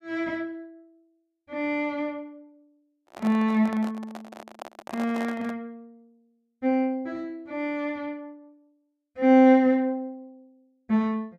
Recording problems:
microphone handling noise; from 3 to 5.5 s; peak -8 dB vs average level

